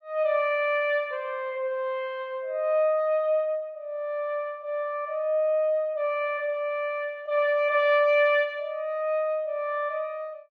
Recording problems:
none

